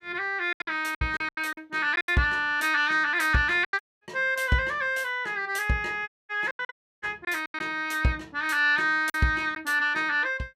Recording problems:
lost packets; 9% of the sound replaced, filled with silence
audio cutting out; at 4 s, at 6 s and at 6.5 s

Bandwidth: 15.5 kHz